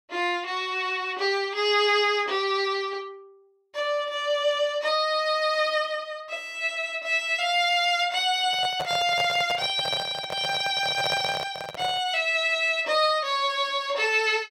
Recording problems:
handling noise; from 8.5 to 12 s; peak -3 dB vs average level

